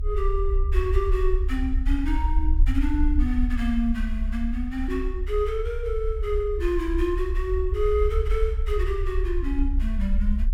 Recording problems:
rumble; below 62 Hz, strongest tone 32 Hz, SNR -1 dB

